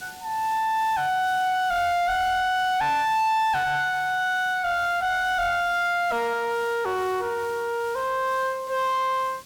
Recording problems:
distorted audio; soft clipping, signal-to-distortion ratio 8 dB
background hiss; SNR 21 dB

